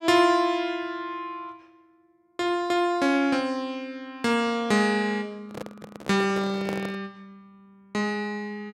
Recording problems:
handling noise; from 5.5 to 7 s; peak -3 dB vs average level

